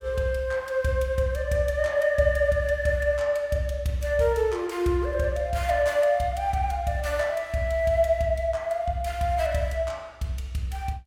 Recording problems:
none

